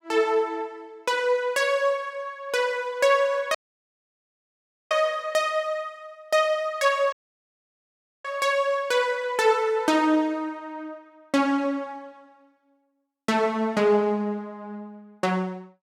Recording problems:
dropout; at 3.5 s for 1.5 s and at 7 s for 1 s

